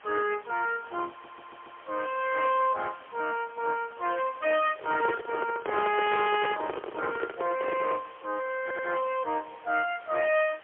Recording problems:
telephone audio; 280 Hz to 3.3 kHz, AMR-NB, then MP3
background hiss; SNR 22 dB
audio stuttering; at 1 s and at 8.5 s
microphone handling noise; from 4.5 to 8 s; peak +2 dB vs average level

